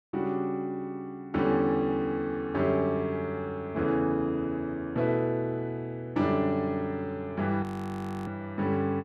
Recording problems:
frozen audio; at 7.5 s for 0.5 s

